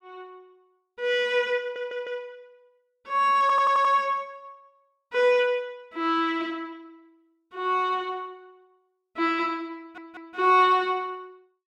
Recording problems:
audio stuttering; at 1.5 s, at 3.5 s and at 10 s

